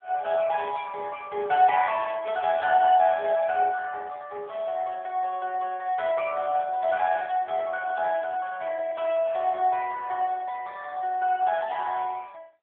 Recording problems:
phone line; 240 Hz to 3.3 kHz, AMR-NB

